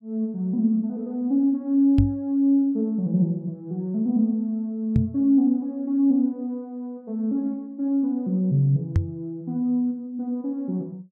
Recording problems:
knock on the microphone; at 2 s, at 5 s and at 9 s; peak +6 dB vs average level

